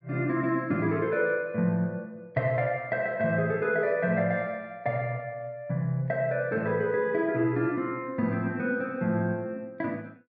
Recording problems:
none

